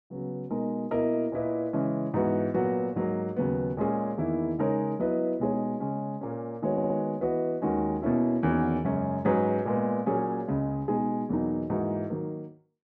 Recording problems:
audio stuttering; at 6.5 s

